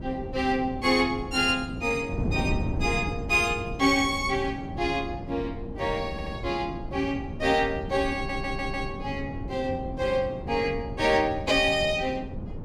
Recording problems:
wind noise; below 250 Hz, SNR 9 dB
audio stuttering; at 6 s and at 8 s

